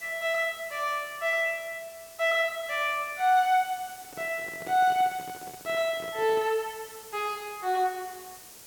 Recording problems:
hiss; SNR 18 dB
handling noise; from 4 to 6.5 s; peak -10 dB vs average level

